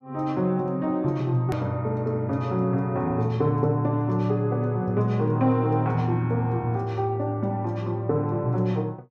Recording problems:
hard cut with a click; at 1.5 s

